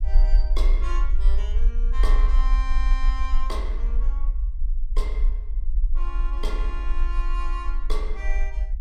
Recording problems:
rumble; below 42 Hz, SNR -11 dB

